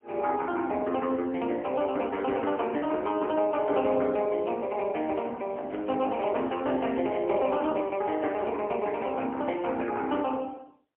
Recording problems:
telephone audio; 220 Hz to 3.1 kHz, AMR-NB, then MP3
crackle; from 5.5 to 8.5 s; loose cable, SNR 27 dB

